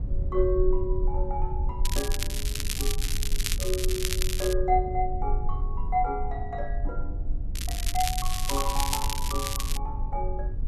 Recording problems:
rumble; below 52 Hz, strongest tone 20 Hz, SNR 1 dB
crackling; from 2 to 4.5 s and from 7.5 to 10 s; loose cable, SNR 1 dB

